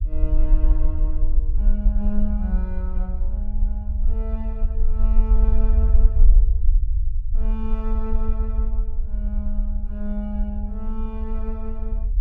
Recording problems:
low-frequency rumble; below 46 Hz, strongest tone 20 Hz, SNR -10 dB

